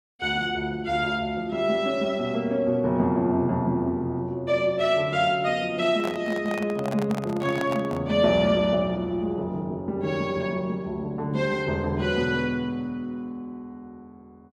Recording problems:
handling noise; from 6 to 8 s; peak -3 dB vs average level

